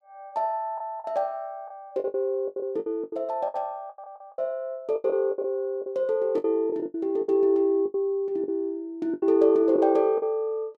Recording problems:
packet loss; 13% of the sound replaced, filled with the last packet

